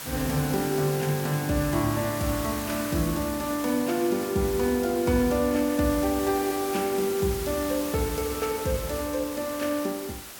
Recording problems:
hiss; slope -1 dB per octave, SNR 9 dB

